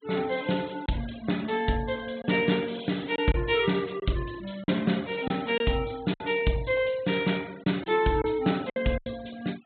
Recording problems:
treble missing; nothing above 4 kHz
noise reduction artefacts; signal-to-artefact ratio 20 dB
packet loss; 5% of the sound replaced, filled with silence

